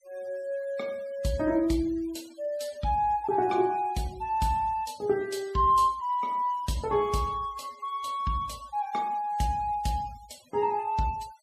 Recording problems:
denoising artefacts; signal-to-artefact ratio 23 dB

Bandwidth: 14.5 kHz